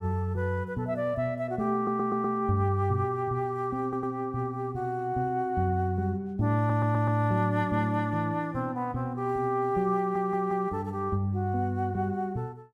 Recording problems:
audio stuttering; 4 times, first at 2 s

